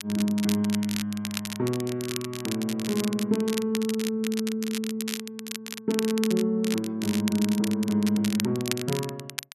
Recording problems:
crackle; vinyl, SNR 8 dB

